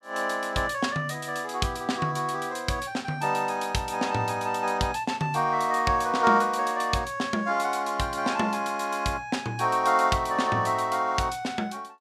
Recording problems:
none

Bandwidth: 14.5 kHz